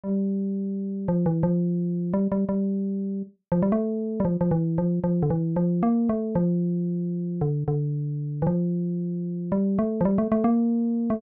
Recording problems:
none

